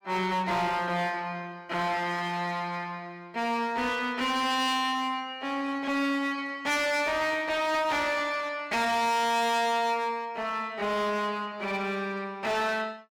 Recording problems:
distortion; hard clipping, uneven, signal-to-distortion ratio 7 dB

